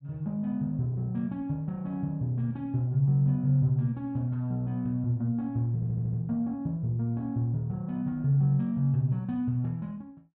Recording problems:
stutter; at 6 s

